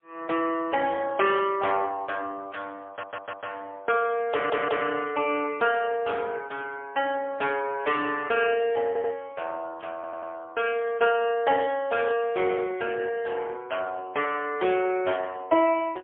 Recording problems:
phone line; 300 Hz to 3.4 kHz, AMR-NB, then MP3
audio stuttering; 4 times, first at 3 s

